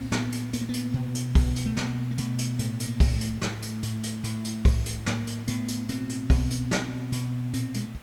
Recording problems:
background hiss; SNR 20 dB

